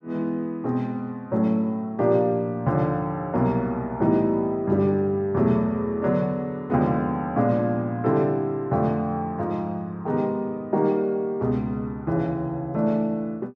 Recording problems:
none

